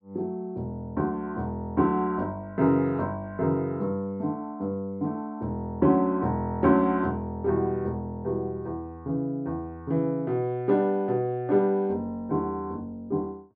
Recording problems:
none

